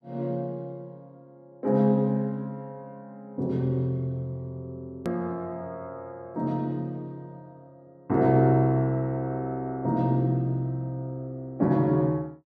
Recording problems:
click at an edit; at 5 s

